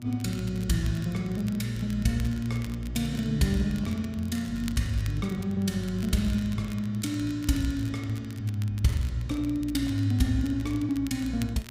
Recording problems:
hum; 60 Hz, harmonics up to 600 Hz, SNR 17 dB
crackle; vinyl, SNR 20 dB

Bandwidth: 15.5 kHz